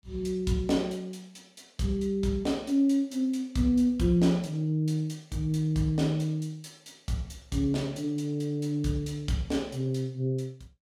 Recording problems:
none

